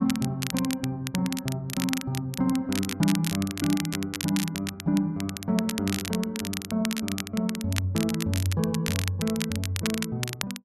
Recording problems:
crackling; vinyl, SNR 6 dB

